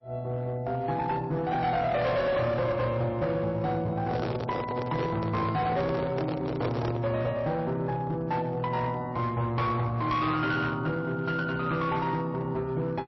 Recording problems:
codec artefacts; MP3, log-spectral distance 2 dB, nothing above 5.7 kHz
distortion; hard clipping, uneven, signal-to-distortion ratio 10 dB
handling noise; from 4 to 7 s; peak +2 dB vs average level

